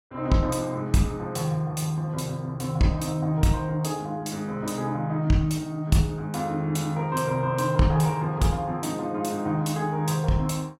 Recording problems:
none

